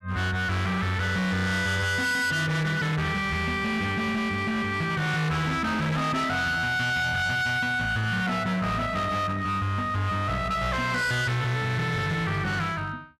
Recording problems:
distorted audio; hard clipping, uneven, signal-to-distortion ratio 7 dB

